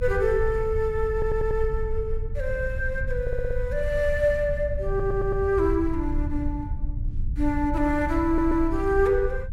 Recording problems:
low-frequency rumble; below 70 Hz, strongest tone 22 Hz, SNR 6 dB
stutter; 4 times, first at 1 s

